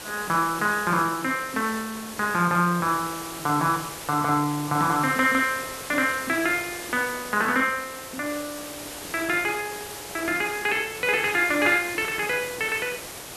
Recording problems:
background hiss; slope -3 dB per octave, SNR 11 dB

